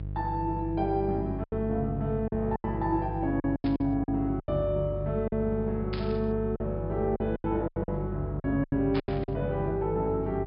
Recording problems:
treble cut off; nothing above 5.5 kHz
hum; 50 Hz, harmonics up to 500 Hz, SNR 7 dB
packet loss; 10% of the sound replaced, filled with silence
static burst; at 3.5 s, at 6 s and at 9 s; peak -4 dB vs average level

